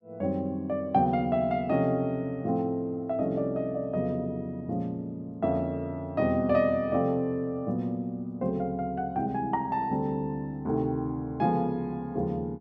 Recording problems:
none

